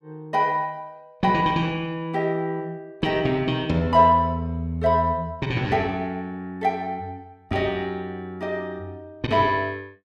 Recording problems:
none

